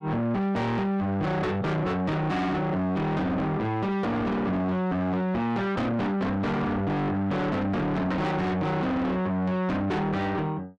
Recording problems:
distorted audio; soft clipping, signal-to-distortion ratio 5 dB

